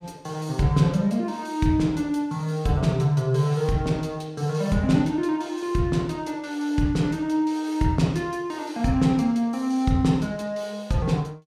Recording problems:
none

